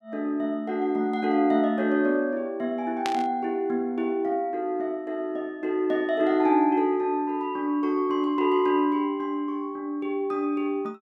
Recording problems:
static burst; at 3 s; peak -1 dB vs average level

